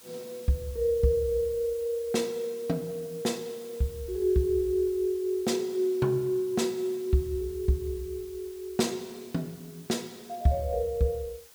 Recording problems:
background hiss; slope 0 dB per octave, SNR 21 dB

